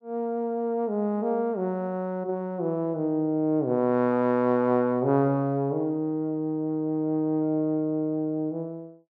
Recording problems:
none

